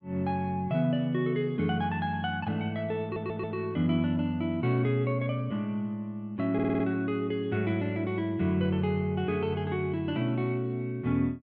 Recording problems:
audio stuttering; at 3 s and at 6.5 s

